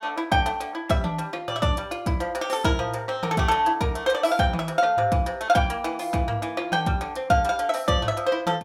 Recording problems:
none

